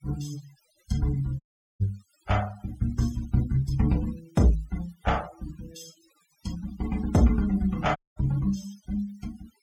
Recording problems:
noise reduction artefacts; signal-to-artefact ratio 20 dB
dropout; at 1.5 s and at 8 s

